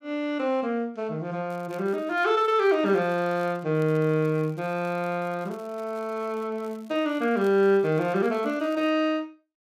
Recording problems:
crackle; from 1.5 to 3.5 s, from 3.5 to 5.5 s and from 5.5 to 9 s; loose cable, SNR 30 dB

